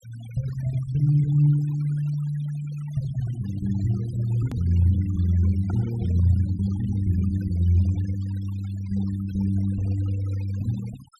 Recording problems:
denoising artefacts; signal-to-artefact ratio 22 dB
hard cut with a click; at 4.5 s

